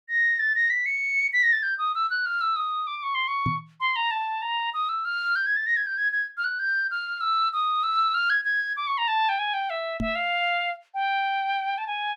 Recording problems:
microphone bump; at 3.5 s and at 10 s; peak -1 dB vs average level

